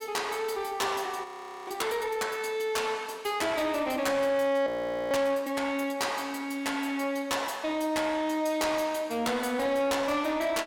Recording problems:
distorted audio; soft clipping, signal-to-distortion ratio 11 dB
audio freezing; at 1 s and at 4.5 s

